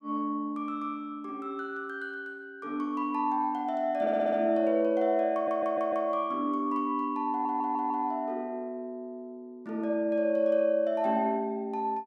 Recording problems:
stutter; at 4 s, at 5.5 s and at 7.5 s

